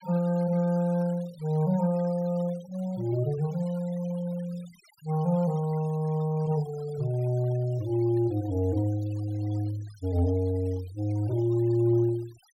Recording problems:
denoising artefacts; signal-to-artefact ratio 24 dB

